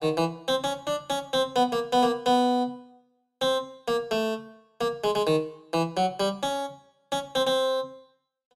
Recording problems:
none

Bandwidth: 16 kHz